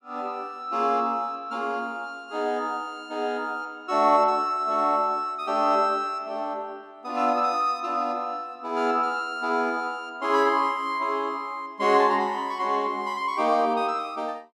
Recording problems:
none

